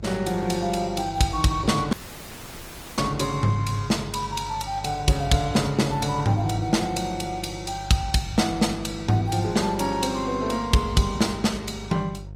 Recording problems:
lossy compression; Opus, log-spectral distance 4 dB
hum; 50 Hz, harmonics up to 650 Hz, SNR 15 dB
dropout; at 2 s for 1 s

